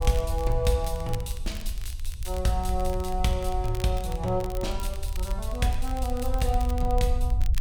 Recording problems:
low-frequency rumble; below 64 Hz, SNR 2 dB
crackle; vinyl, SNR 17 dB

